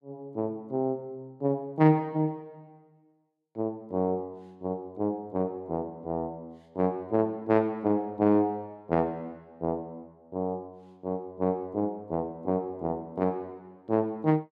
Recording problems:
none

